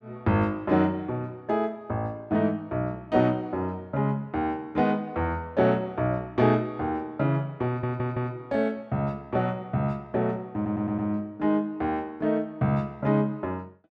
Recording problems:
audio stuttering; at 7.5 s and at 11 s

